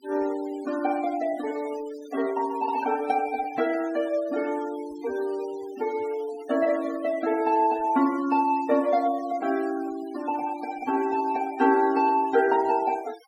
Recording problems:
denoising artefacts; signal-to-artefact ratio 19 dB

